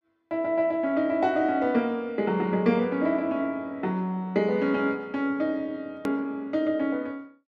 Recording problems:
edit click; at 6 s

